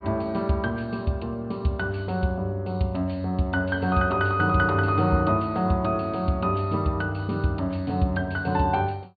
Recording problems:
low-pass filter; nothing above 4.5 kHz

